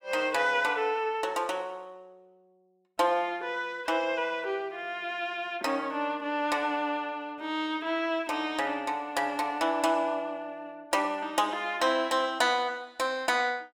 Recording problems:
none

